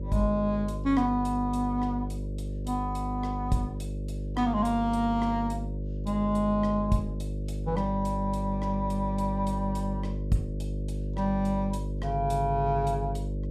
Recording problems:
mains hum; 50 Hz, harmonics up to 600 Hz, SNR 5 dB

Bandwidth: 15 kHz